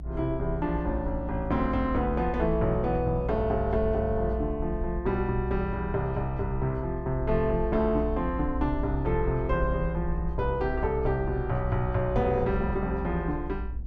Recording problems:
low-frequency rumble; below 60 Hz, strongest tone 58 Hz, SNR 6 dB

